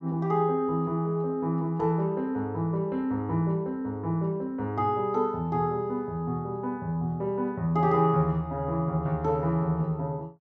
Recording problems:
treble cut off; nothing above 8 kHz

